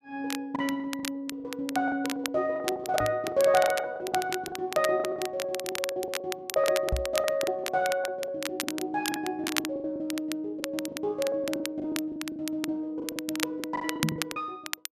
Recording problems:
crackle; vinyl, SNR 7 dB
lost packets; 16% of the sound replaced, filled with the last packet
microphone bump; at 3 s, at 7 s and at 14 s; peak +5 dB vs average level

